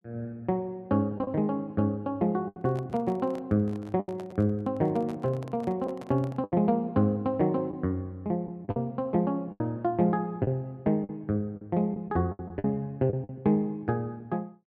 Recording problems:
packet loss; 6% of the sound replaced, filled with the last packet
handling noise; from 2.5 to 6.5 s; peak -12 dB vs average level

